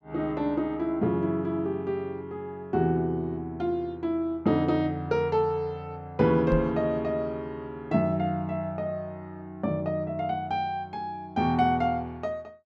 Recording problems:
microphone bump; at 6.5 s; peak +2 dB vs average level

